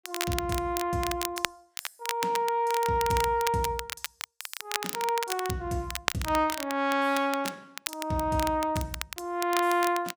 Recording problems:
crackle; vinyl, SNR 7 dB

